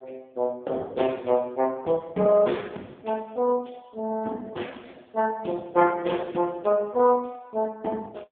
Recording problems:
telephone audio; 190 Hz to 3.5 kHz, AMR-NB

